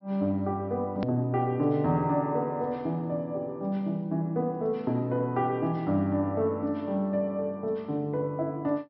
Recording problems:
treble cut off; nothing above 5.6 kHz
click at an edit; at 1 s

